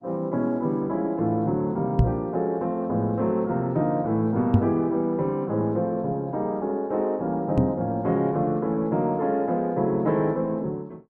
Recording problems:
codec artefacts; Opus, log-spectral distance 2 dB
microphone thump; at 2 s, at 4.5 s and at 7.5 s; peak +9 dB vs average level

